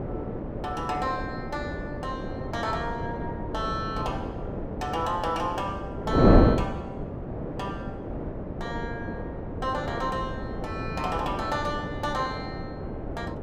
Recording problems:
wind on the microphone; below 500 Hz, SNR -2 dB

